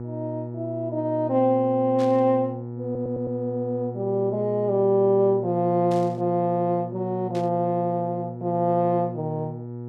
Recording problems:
electrical hum; 60 Hz, harmonics up to 960 Hz, SNR 10 dB
burst of static; at 2 s, at 6 s and at 7.5 s; peak -13 dB vs average level
audio stuttering; at 3 s

